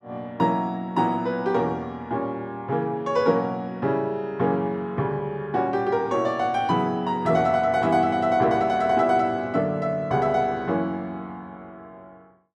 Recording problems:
none

